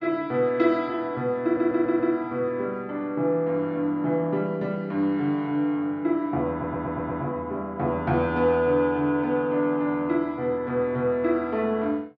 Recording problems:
stutter; at 1.5 s and at 6.5 s

